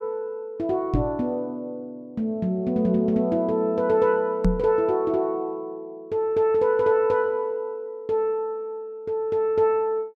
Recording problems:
knock on the microphone; at 1 s and at 4.5 s; peak +5 dB vs average level

